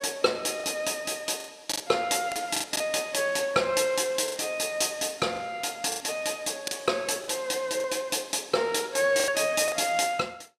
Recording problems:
packet loss; 8% of the sound replaced, filled with the last packet

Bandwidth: 14.5 kHz